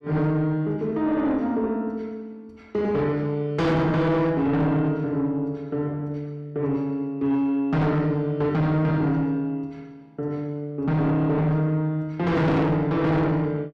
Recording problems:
distorted audio; soft clipping, signal-to-distortion ratio 7 dB

